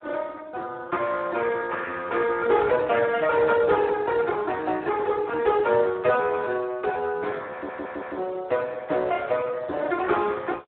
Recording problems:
telephone audio; 300 Hz to 3.7 kHz, Speex
audio stuttering; at 7.5 s

